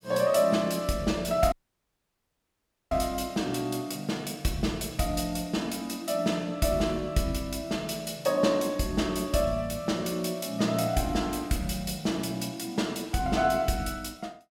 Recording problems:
dropout; at 1.5 s for 1.5 s

